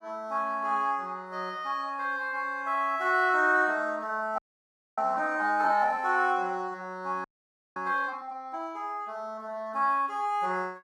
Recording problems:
frozen audio; at 4.5 s for 0.5 s and at 7 s for 0.5 s

